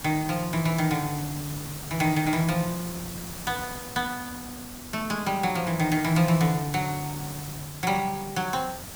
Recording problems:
hiss; slope -3 dB per octave, SNR 10 dB

